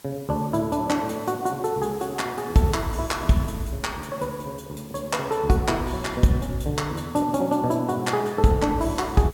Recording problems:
hiss; slope -2 dB per octave, SNR 22 dB

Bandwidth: 17 kHz